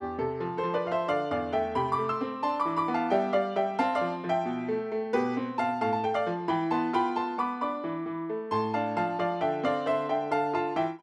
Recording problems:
none

